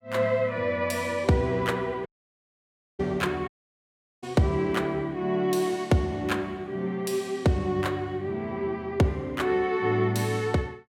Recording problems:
dropout; at 2 s for 1 s and at 3.5 s for 0.5 s

